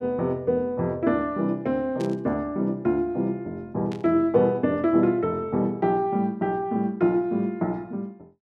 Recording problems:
burst of static; at 2 s and at 4 s; peak -13 dB vs average level

